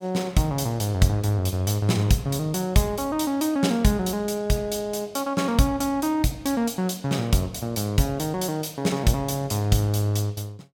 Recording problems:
none

